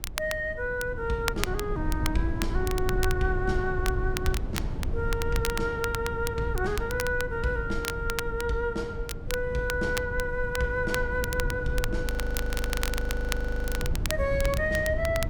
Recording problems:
rumble; below 100 Hz, SNR 3 dB
crackling; vinyl, SNR 7 dB
audio freezing; at 12 s for 1.5 s

